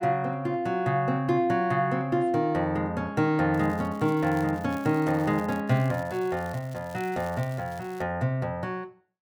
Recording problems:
crackle; from 3.5 to 5.5 s and from 5.5 to 8 s; loose cable, SNR 24 dB

